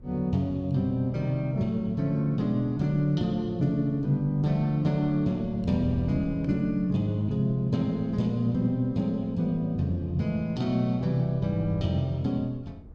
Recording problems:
wind noise; below 160 Hz, SNR 20 dB

